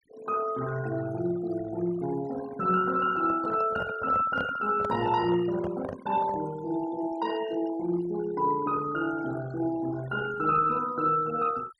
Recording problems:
noise reduction artefacts; signal-to-artefact ratio 16 dB
microphone handling noise; from 3 to 6.5 s; peak -4 dB vs average level

